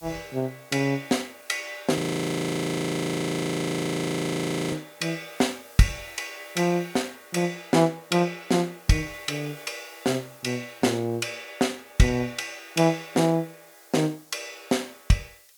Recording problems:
hiss; slope +4 dB per octave, SNR 24 dB
frozen audio; at 2 s for 2.5 s

